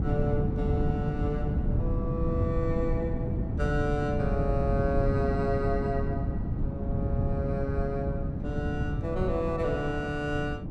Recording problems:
wind noise; below 190 Hz, SNR -1 dB

